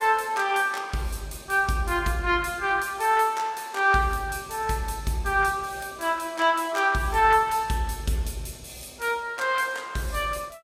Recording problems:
codec artefacts; Vorbis, log-spectral distance 4 dB, nothing above 16 kHz

